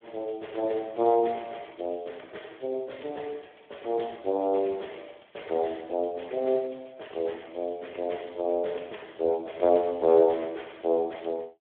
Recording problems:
phone line; 280 Hz to 3.5 kHz, Speex

